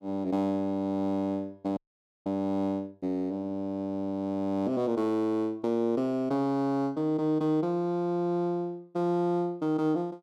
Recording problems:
audio freezing; at 2 s

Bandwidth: 14 kHz